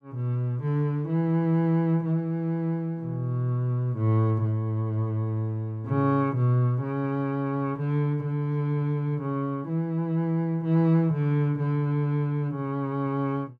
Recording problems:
none

